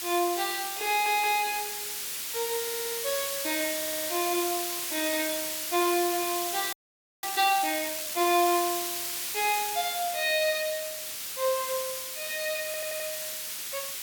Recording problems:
hiss; slope +3 dB per octave, SNR 2 dB
audio stuttering; 4 times, first at 1 s
audio freezing; at 6.5 s for 0.5 s

